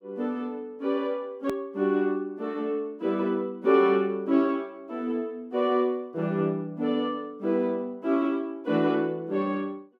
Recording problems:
click at an edit; at 1.5 s

